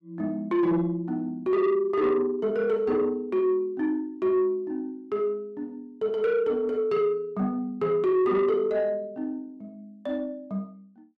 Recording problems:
distortion; soft clipping, signal-to-distortion ratio 12 dB

